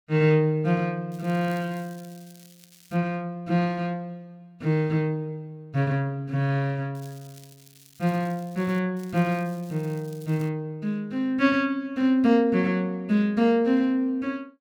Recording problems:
crackling; from 1 to 3 s, from 7 to 9 s and from 9 to 10 s; loose cable, SNR 26 dB

